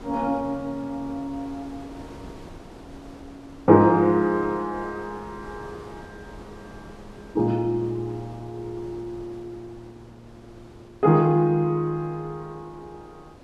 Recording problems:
wind on the microphone; below 680 Hz, SNR 21 dB

